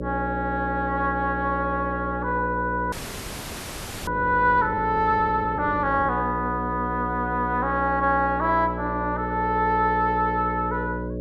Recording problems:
electrical hum; 60 Hz, harmonics up to 600 Hz, SNR 7 dB
frozen audio; at 3 s for 1 s

